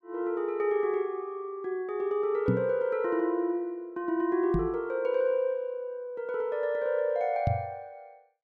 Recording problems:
microphone bump; at 2.5 s, at 4.5 s and at 7.5 s; peak +7 dB vs average level

